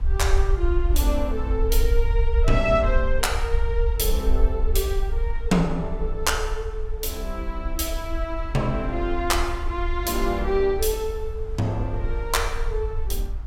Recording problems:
low-frequency rumble; below 56 Hz, SNR 2 dB
wind noise; below 150 Hz, SNR 18 dB

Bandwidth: 16.5 kHz